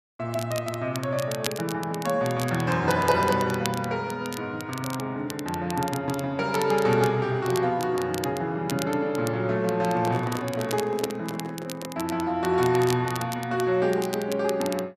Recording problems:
crackle; vinyl, SNR 13 dB
handling noise; from 10 to 12 s; peak -4 dB vs average level

